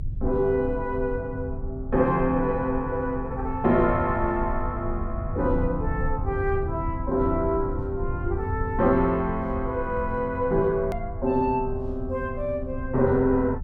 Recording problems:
low-frequency rumble; below 94 Hz, SNR 8 dB
hard cut with a click; at 11 s

